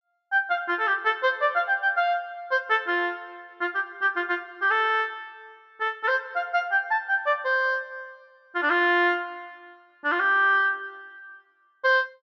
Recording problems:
treble missing; nothing above 7.9 kHz

